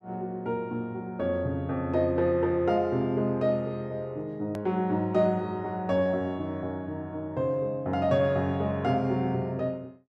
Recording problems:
hard cut with a click; at 4.5 s

